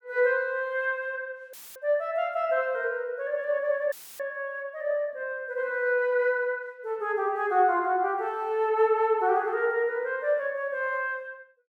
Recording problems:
dropout; at 1.5 s and at 4 s; filled with static

